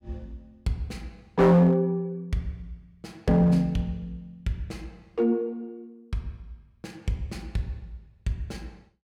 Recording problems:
distorted audio; hard clipping, uneven, signal-to-distortion ratio 10 dB

